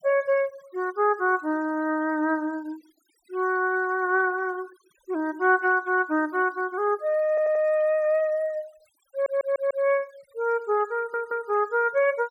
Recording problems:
noise reduction artefacts; signal-to-artefact ratio 28 dB
audio stuttering; at 7.5 s, at 9 s and at 11 s

